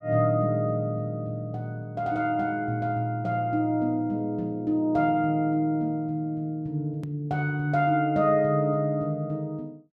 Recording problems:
click at an edit; at 7 s

